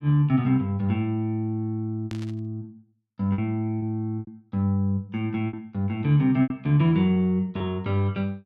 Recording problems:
lost packets; 6% of the sound replaced, filled with repeated pitch periods
static burst; at 2 s; peak -12 dB vs average level

